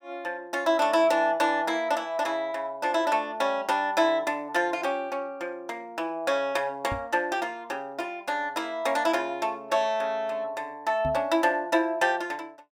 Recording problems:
microphone thump; at 7 s and at 11 s; peak -4 dB vs average level

